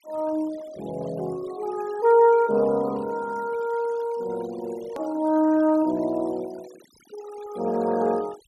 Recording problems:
denoising artefacts; signal-to-artefact ratio 22 dB
hard cut with a click; at 5 s

